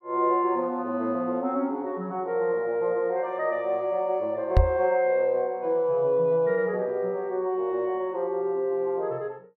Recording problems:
knock on the microphone; at 4.5 s; peak +9 dB vs average level

